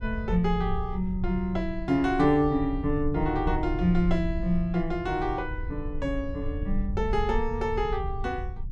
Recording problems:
rumble; below 70 Hz, SNR 7 dB

